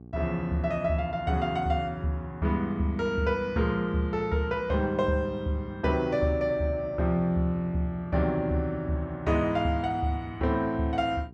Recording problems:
hum; 60 Hz, harmonics up to 840 Hz, SNR 20 dB

